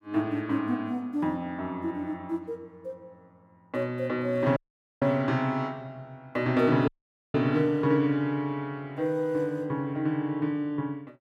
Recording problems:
dropout; at 4.5 s and at 7 s

